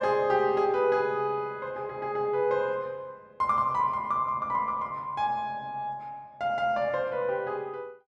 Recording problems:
none

